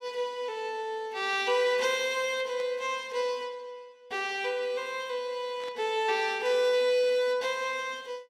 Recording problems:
burst of static; at 2.5 s and at 5.5 s; peak -14 dB vs average level

